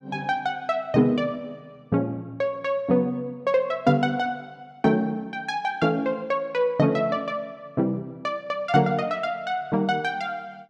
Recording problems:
none

